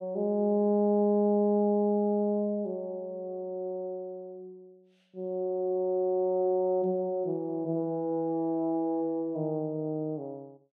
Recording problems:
none

